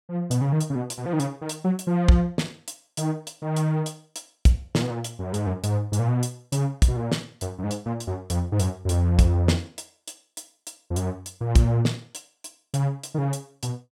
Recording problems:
none

